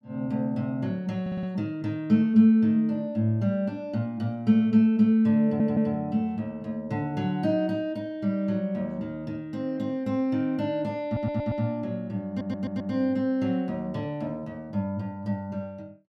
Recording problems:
stutter; 4 times, first at 1 s

